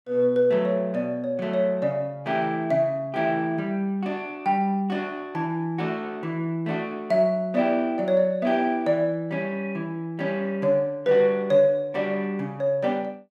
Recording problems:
none

